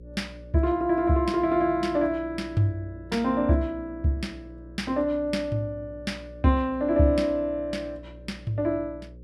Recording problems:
hum; 60 Hz, harmonics up to 540 Hz, SNR 19 dB

